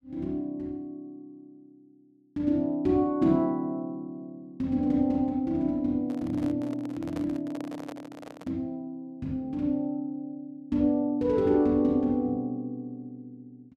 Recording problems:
handling noise; from 6 to 8.5 s; peak -7 dB vs average level

